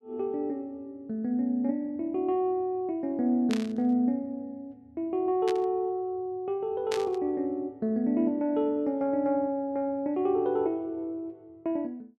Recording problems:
burst of static; at 3.5 s, at 5.5 s and at 7 s; peak -3 dB vs average level

